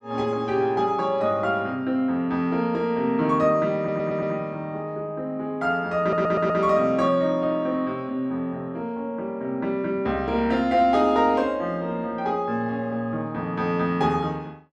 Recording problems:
audio stuttering; at 4 s and at 6 s

